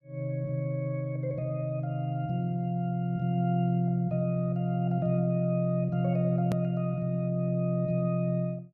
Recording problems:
hard cut with a click; at 6.5 s

